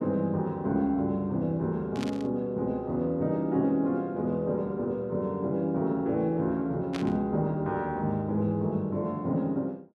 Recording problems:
burst of static; at 2 s and at 7 s; peak -4 dB vs average level

